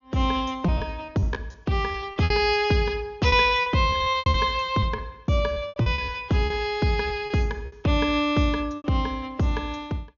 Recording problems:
treble cut off; nothing above 6.9 kHz
packet loss; 11% of the sound replaced, filled with repeated pitch periods

